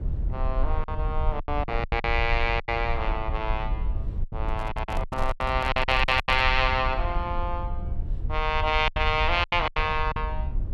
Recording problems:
low-frequency rumble; below 66 Hz, SNR 5 dB
packet loss; 12% of the sound replaced, filled with silence
microphone handling noise; from 4.5 to 6.5 s; peak -6 dB vs average level

